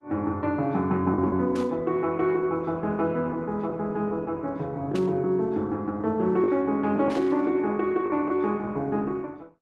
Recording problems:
lossy codec; Opus, log-spectral distance 2 dB
lost packets; 3% of the sound replaced, filled with the last packet
burst of static; at 1.5 s, at 5 s and at 7 s; peak -10 dB vs average level

